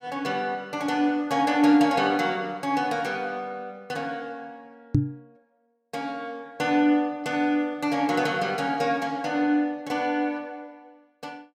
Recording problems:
microphone thump; at 5 s; peak +7 dB vs average level

